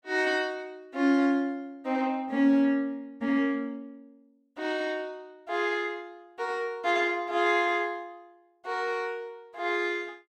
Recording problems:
none

